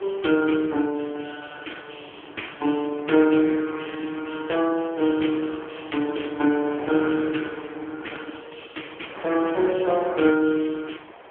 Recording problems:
telephone audio; 240 Hz to 3.2 kHz, AMR-NB
wind on the microphone; below 1.6 kHz, SNR 19 dB

